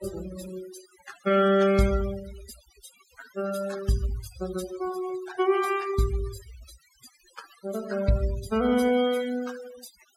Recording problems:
noise reduction artefacts; signal-to-artefact ratio 14 dB

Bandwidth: 16.5 kHz